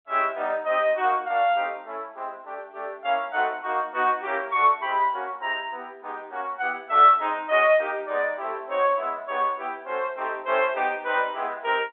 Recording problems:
telephone audio; 280 Hz to 3.7 kHz, G.711

